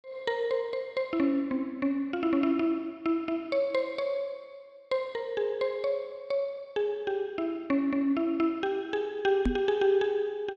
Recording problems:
knock on the microphone; at 9.5 s; peak +5 dB vs average level

